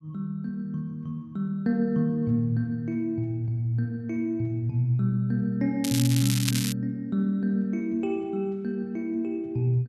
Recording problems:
crackle; at 6 s; loose cable, SNR 4 dB

